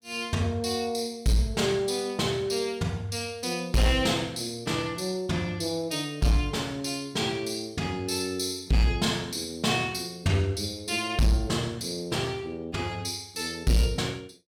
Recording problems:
distorted audio; hard clipping, signal-to-distortion ratio 12 dB

